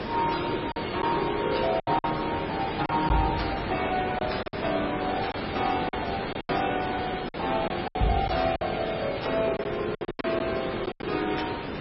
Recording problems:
codec artefacts; Vorbis, then MP3, log-spectral distance 8 dB, nothing above 5.5 kHz
background hiss; SNR 5 dB
packet loss; 9% of the sound replaced, filled with silence
crackle; from 2.5 to 3.5 s and from 5.5 to 6.5 s; loose cable, SNR 26 dB

